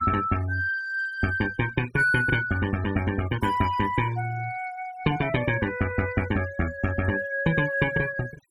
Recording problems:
denoising artefacts; signal-to-artefact ratio 17 dB

